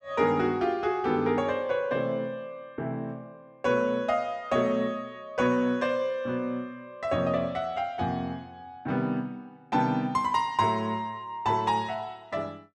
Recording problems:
none

